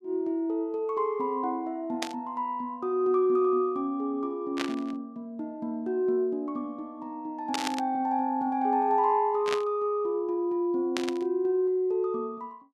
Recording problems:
static burst; 5 times, first at 2 s; peak +1 dB vs average level

